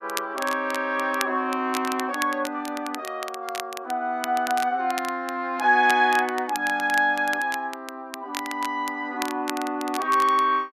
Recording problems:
crackle; vinyl, SNR 13 dB

